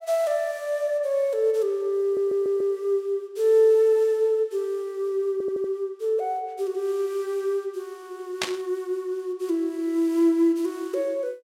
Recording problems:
stutter; at 2 s and at 5.5 s
static burst; at 8.5 s; peak +3 dB vs average level

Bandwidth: 16 kHz